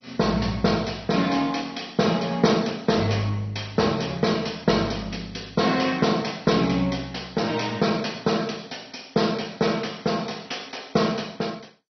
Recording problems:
lossy compression; MP2, log-spectral distance 6 dB, nothing above 6 kHz

